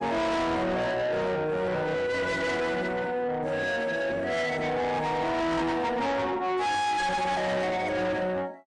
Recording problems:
codec artefacts; MP3, log-spectral distance 2 dB, nothing above 9.2 kHz
distorted audio; soft clipping, signal-to-distortion ratio 7 dB

